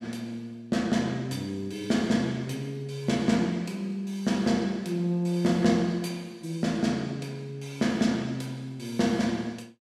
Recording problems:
none

